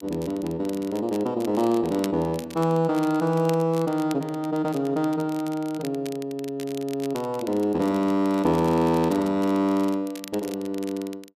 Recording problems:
crackling; vinyl, SNR 19 dB

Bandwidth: 14.5 kHz